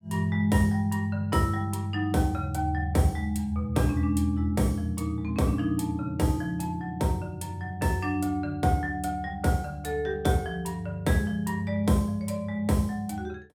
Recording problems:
none

